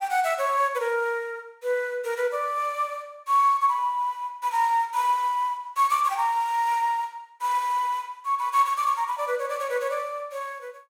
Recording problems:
none

